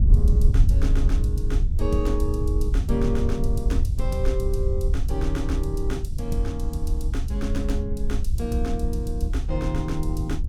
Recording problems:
wind noise; below 72 Hz, SNR -5 dB

